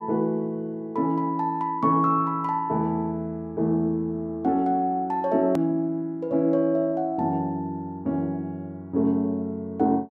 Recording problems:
edit click; at 5.5 s

